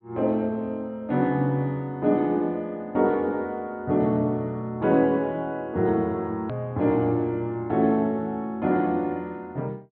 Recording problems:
treble cut off; nothing above 4.4 kHz
edit click; at 6.5 s

